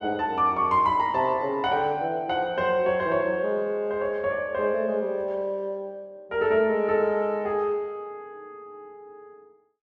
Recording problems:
none

